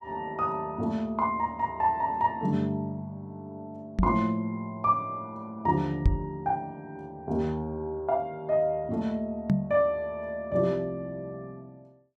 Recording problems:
microphone thump; at 4 s, at 6 s and at 9.5 s; peak +9 dB vs average level

